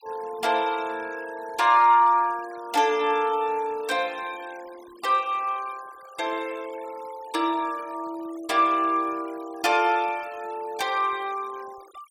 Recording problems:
noise reduction artefacts; signal-to-artefact ratio 22 dB

